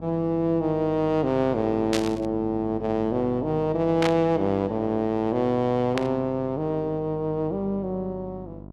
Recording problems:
electrical hum; 50 Hz, harmonics up to 1.1 kHz, SNR 17 dB
burst of static; at 2 s, at 4 s and at 6 s; peak +1 dB vs average level

